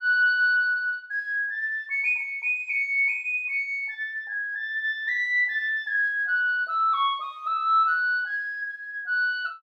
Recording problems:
none

